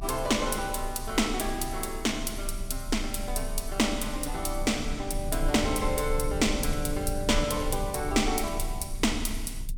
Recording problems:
low-frequency rumble; below 56 Hz, strongest tone 28 Hz, SNR 8 dB

